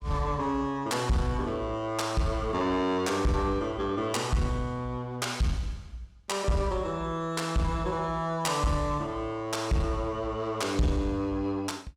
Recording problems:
distortion; soft clipping, signal-to-distortion ratio 10 dB

